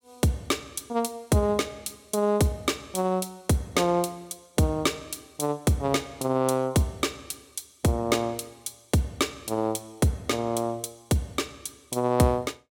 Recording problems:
none

